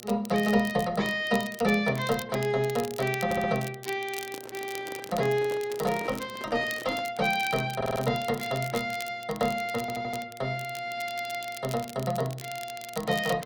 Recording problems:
hum; 60 Hz, harmonics up to 1.3 kHz, SNR 25 dB
crackle; vinyl, SNR 15 dB
stutter; at 3.5 s, at 8 s and at 10 s
handling noise; from 4 to 7 s; peak -7 dB vs average level

